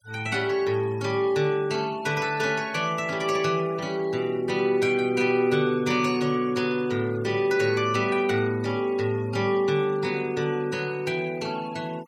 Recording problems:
noise reduction artefacts; signal-to-artefact ratio 21 dB

